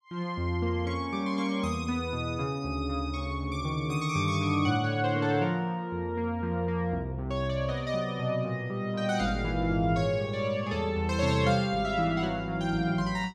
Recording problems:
none

